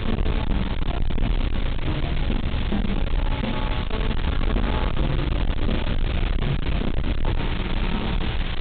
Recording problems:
treble cut off; nothing above 4 kHz
distortion; soft clipping, signal-to-distortion ratio 6 dB
hum; 60 Hz, harmonics up to 720 Hz, SNR 9 dB
hiss; SNR 5 dB
low-frequency rumble; below 92 Hz, SNR -1 dB

